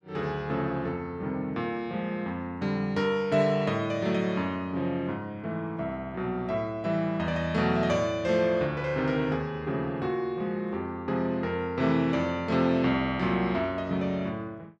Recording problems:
none

